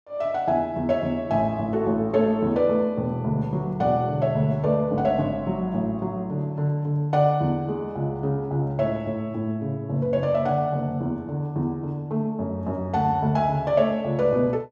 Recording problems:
none

